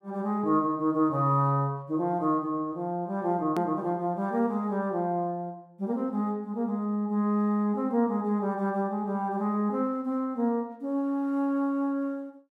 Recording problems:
edit click; at 3.5 s

